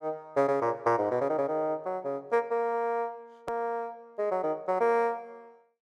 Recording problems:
hard cut with a click; at 3.5 s

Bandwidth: 12.5 kHz